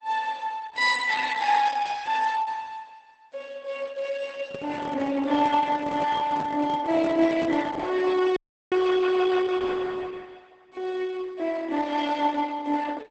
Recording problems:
lossy compression; Opus, log-spectral distance 4 dB, nothing above 8 kHz
handling noise; from 4.5 to 8 s; peak -6 dB vs average level
dropout; at 8.5 s

